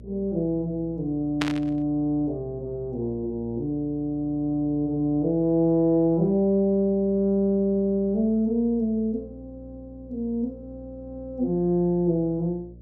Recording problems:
hum; 60 Hz, harmonics up to 600 Hz, SNR 21 dB
static burst; at 1.5 s; peak +1 dB vs average level

